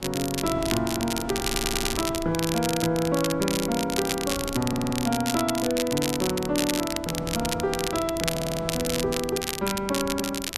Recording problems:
wind noise; below 400 Hz, SNR 13 dB
crackling; vinyl, SNR 4 dB
audio stuttering; at 1.5 s, at 4.5 s and at 8.5 s

